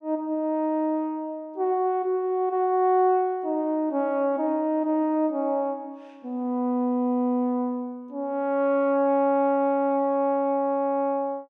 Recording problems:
none

